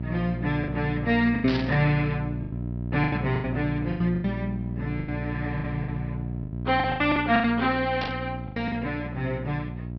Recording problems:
treble cut off; nothing above 5.5 kHz
electrical hum; 60 Hz, harmonics up to 660 Hz, SNR 6 dB
lost packets; 12% of the sound replaced, filled with the last packet
burst of static; at 1.5 s and at 8 s; peak -3 dB vs average level

